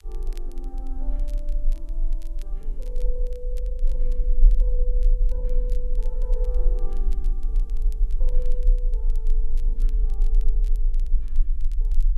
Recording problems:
hiss; slope 0 dB per octave, SNR 29 dB
low-frequency rumble; below 36 Hz, strongest tone 22 Hz, SNR -16 dB
crackling; vinyl, SNR 16 dB

